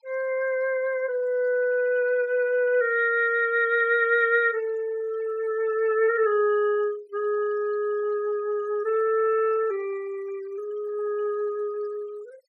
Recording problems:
denoising artefacts; signal-to-artefact ratio 26 dB

